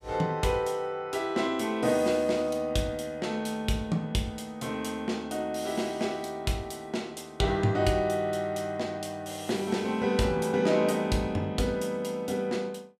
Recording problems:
none

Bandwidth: 15.5 kHz